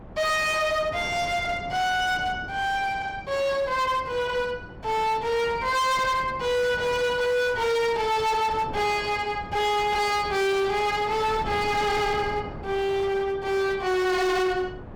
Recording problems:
distortion; hard clipping, signal-to-distortion ratio 7 dB
wind noise; below 570 Hz, SNR 16 dB

